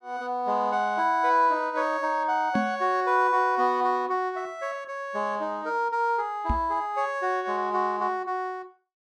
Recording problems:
microphone bump; at 2.5 s and at 6.5 s; peak +2 dB vs average level

